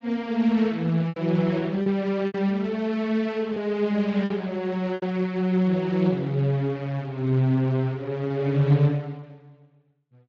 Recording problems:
codec artefacts; Speex, log-spectral distance 2 dB
lost packets; 4% of the sound replaced, filled with repeated pitch periods

